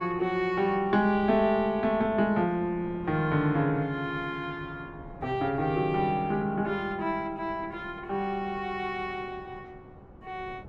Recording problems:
wind on the microphone; below 460 Hz, SNR 19 dB

